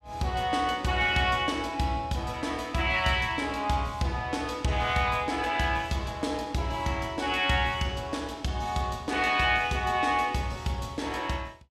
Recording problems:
none

